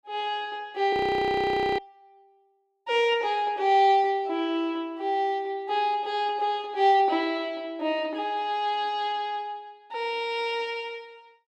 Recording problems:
frozen audio; at 1 s for 1 s

